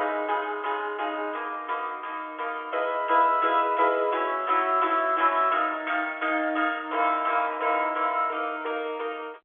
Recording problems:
phone line; 340 Hz to 3.6 kHz, G.711

